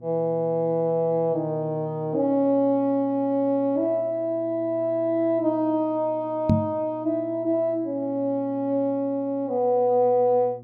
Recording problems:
mains hum; 60 Hz, harmonics up to 720 Hz, SNR 22 dB
microphone bump; at 6.5 s; peak +7 dB vs average level

